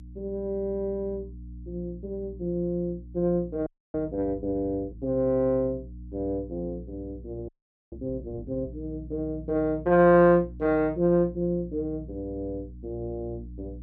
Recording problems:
hum; 60 Hz, harmonics up to 300 Hz, SNR 16 dB
frozen audio; at 3.5 s and at 7.5 s

